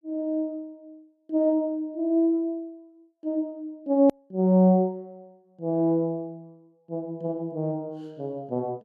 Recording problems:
edit click; at 4 s

